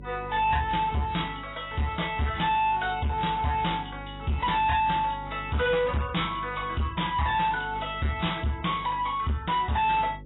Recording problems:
lossy codec; AAC, log-spectral distance 6 dB, nothing above 3.8 kHz
distorted audio; soft clipping, signal-to-distortion ratio 6 dB
hum; 50 Hz, harmonics up to 550 Hz, SNR 17 dB

